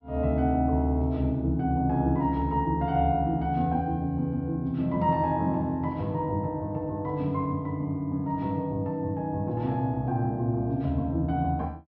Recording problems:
treble cut off; nothing above 5.8 kHz

